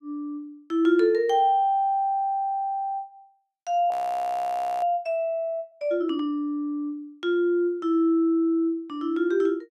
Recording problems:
audio freezing; at 4 s for 1 s

